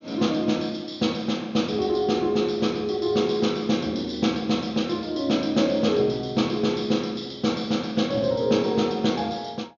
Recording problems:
low-pass filter; nothing above 6.7 kHz

